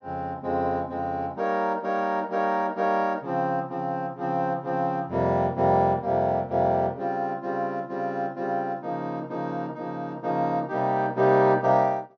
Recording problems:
low-pass filter; nothing above 6.3 kHz

